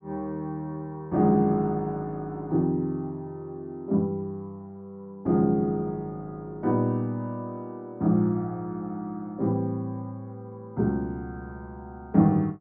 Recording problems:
none

